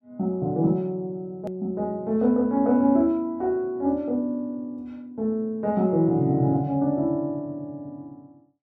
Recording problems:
edit click; at 1.5 s

